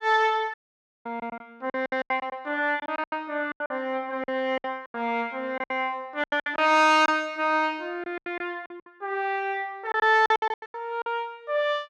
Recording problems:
packet loss; 14% of the sound replaced, filled with silence
audio cutting out; at 0.5 s for 0.5 s

